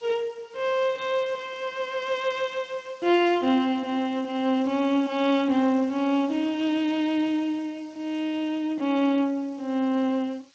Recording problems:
lossy codec; Speex, log-spectral distance 4 dB
hiss; slope +3 dB per octave, SNR 30 dB

